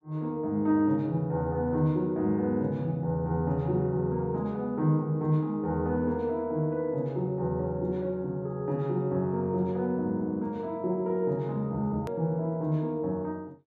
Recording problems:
hard cut with a click; at 12 s

